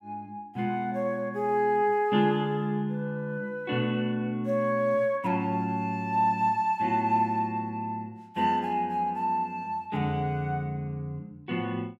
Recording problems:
none

